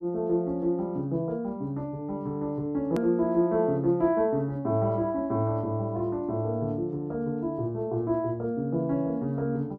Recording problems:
hard cut with a click; at 3 s

